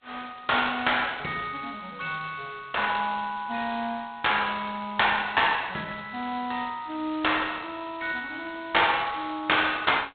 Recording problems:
telephone audio; 170 Hz to 3.9 kHz, G.726

